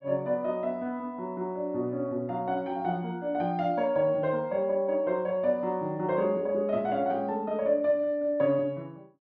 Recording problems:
none

